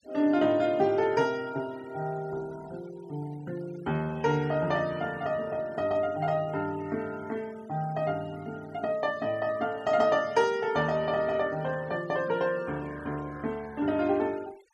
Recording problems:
denoising artefacts; signal-to-artefact ratio 23 dB

